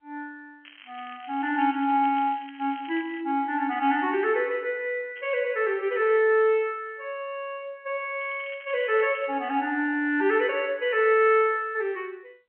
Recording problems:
telephone audio; 260 Hz to 3.3 kHz, G.711
crackle; from 0.5 to 3 s, at 5 s and from 8 to 9.5 s; loose cable, SNR 23 dB

